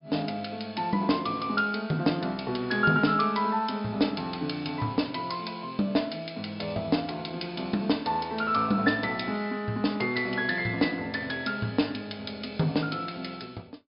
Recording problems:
treble missing; nothing above 5.5 kHz

